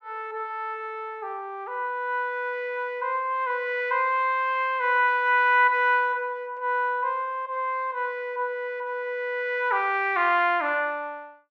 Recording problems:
none

